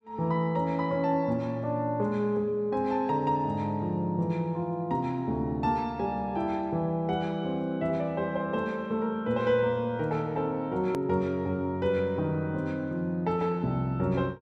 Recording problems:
hard cut with a click; at 11 s

